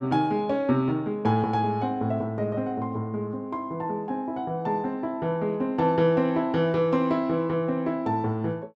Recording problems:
none

